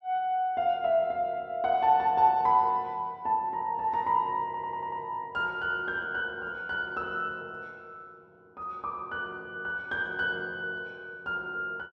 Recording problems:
audio stuttering; at 4.5 s

